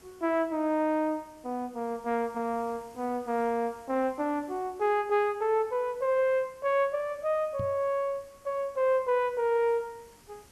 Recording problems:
hiss; slope -3 dB per octave, SNR 28 dB
knock on the microphone; at 7.5 s; peak -4 dB vs average level

